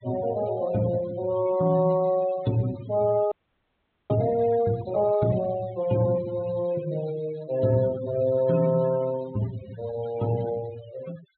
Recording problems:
treble missing; nothing above 4 kHz
noise reduction artefacts; signal-to-artefact ratio 16 dB
audio freezing; at 3.5 s for 1 s

